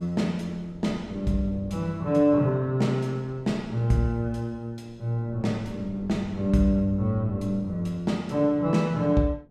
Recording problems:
wind on the microphone; below 300 Hz, SNR 21 dB

